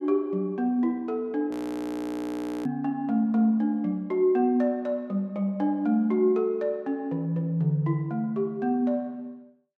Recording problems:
audio freezing; at 1.5 s for 1 s

